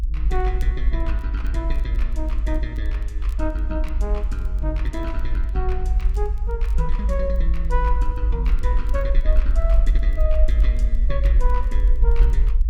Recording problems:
low-frequency rumble; below 52 Hz, SNR -8 dB
crackling; vinyl, SNR 27 dB

